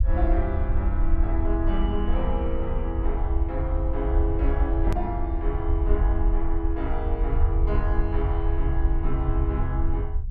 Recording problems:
low-frequency rumble; below 64 Hz, SNR -4 dB
hard cut with a click; at 5 s

